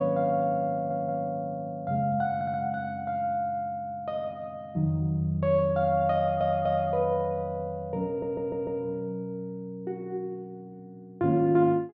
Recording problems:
stutter; 4 times, first at 0.5 s

